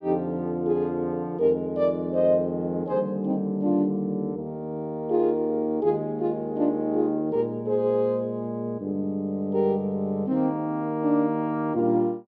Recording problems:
none

